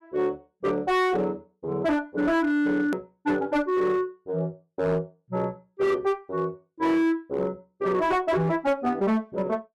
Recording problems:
distortion; hard clipping, signal-to-distortion ratio 11 dB
click at an edit; at 3 s

